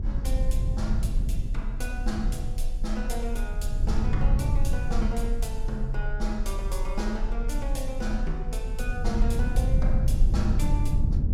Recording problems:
rumble; below 60 Hz, SNR -6 dB

